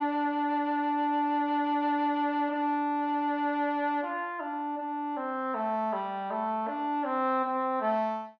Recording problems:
none

